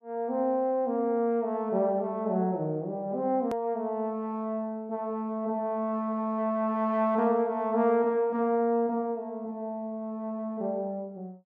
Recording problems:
hard cut with a click; at 3.5 s

